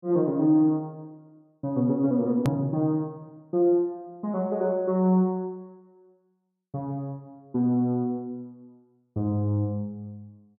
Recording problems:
hard cut with a click; at 2.5 s

